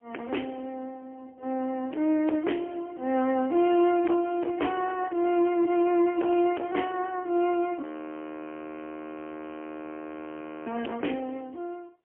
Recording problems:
phone line; 240 Hz to 3.2 kHz, AMR-NB, then MP3
distortion; hard clipping, signal-to-distortion ratio 8 dB
frozen audio; at 8 s for 3 s

